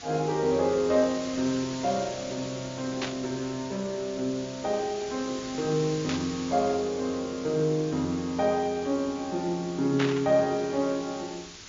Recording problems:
treble cut off; nothing above 7.2 kHz
background hiss; SNR 13 dB
burst of static; at 3 s, at 6 s and at 10 s; peak +1 dB vs average level

